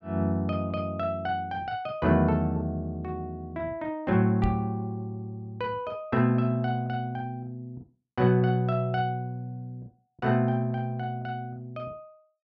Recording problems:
microphone bump; at 4.5 s; peak +2 dB vs average level

